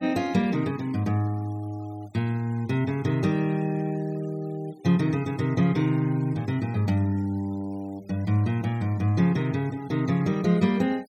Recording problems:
noise reduction artefacts; signal-to-artefact ratio 26 dB

